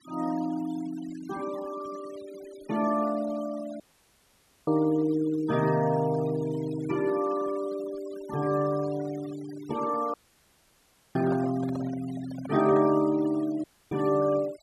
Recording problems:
noise reduction artefacts; signal-to-artefact ratio 18 dB
dropout; at 4 s for 1 s, at 10 s for 1 s and at 14 s
microphone handling noise; from 11 to 13 s; peak -6 dB vs average level

